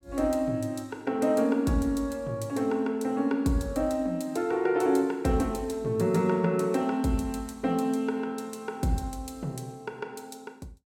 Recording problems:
none

